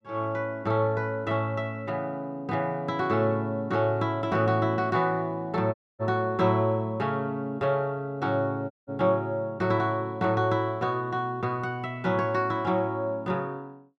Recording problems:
dropout; at 5.5 s and at 8.5 s

